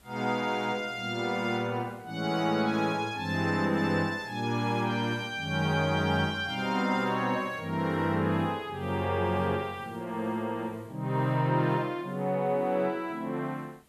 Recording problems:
background hiss; slope -4 dB per octave, SNR 29 dB

